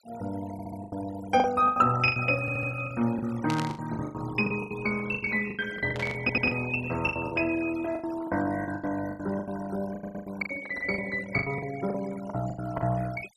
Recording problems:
noise reduction artefacts; signal-to-artefact ratio 16 dB
packet loss; 17% of the sound replaced, filled with the last packet
stutter; 4 times, first at 0.5 s
static burst; at 3.5 s and at 6 s; peak -2 dB vs average level

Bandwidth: 13.5 kHz